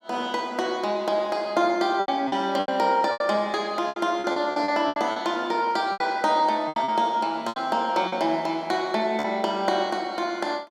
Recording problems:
packet loss; 9% of the sound replaced, filled with repeated pitch periods

